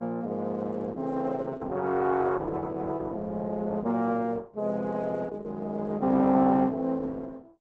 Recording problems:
codec artefacts; Opus, log-spectral distance 3 dB

